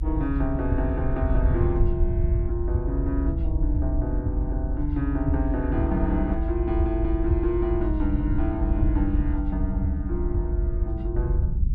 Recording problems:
low-frequency rumble; below 72 Hz, SNR -1 dB

